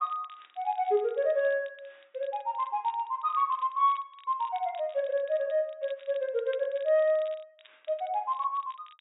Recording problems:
treble missing; nothing above 3.8 kHz
crackling; vinyl, SNR 27 dB

